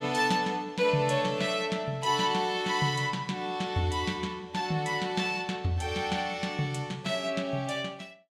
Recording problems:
none

